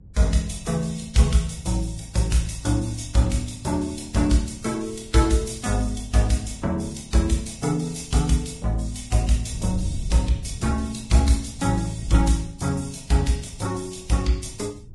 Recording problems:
lossy compression; Vorbis, log-spectral distance 6 dB, nothing above 10.7 kHz
wind noise; below 120 Hz, SNR 17 dB

